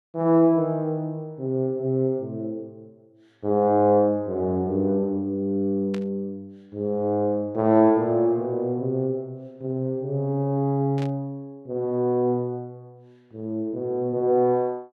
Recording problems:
static burst; at 6 s and at 11 s; peak -11 dB vs average level

